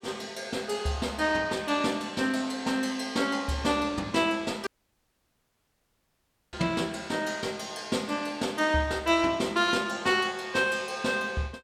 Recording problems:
dropout; at 4.5 s for 2 s

